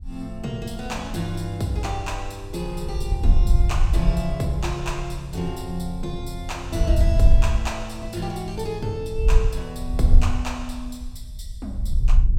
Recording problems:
wind on the microphone; below 64 Hz, SNR -5 dB

